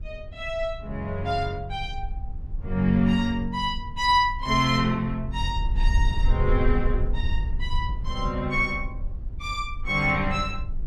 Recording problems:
low-frequency rumble; below 60 Hz, SNR 6 dB

